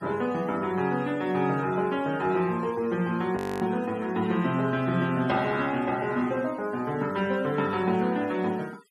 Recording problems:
noise reduction artefacts; signal-to-artefact ratio 22 dB
frozen audio; at 3.5 s

